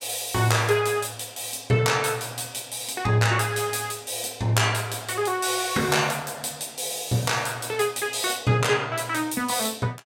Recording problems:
none

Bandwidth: 16.5 kHz